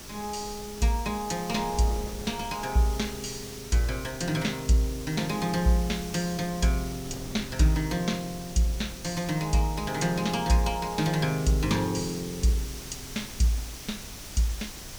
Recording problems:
background hiss; SNR 13 dB
wind noise; below 300 Hz, SNR 17 dB

